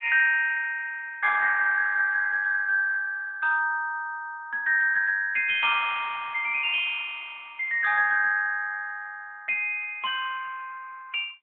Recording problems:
phone line; 260 Hz to 3.5 kHz, AMR-NB

